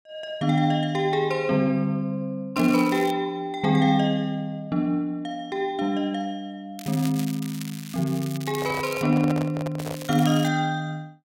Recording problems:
crackle; at 2.5 s, from 7 to 9 s and at 10 s; loose cable, SNR 15 dB
handling noise; from 8.5 to 10 s; peak -3 dB vs average level

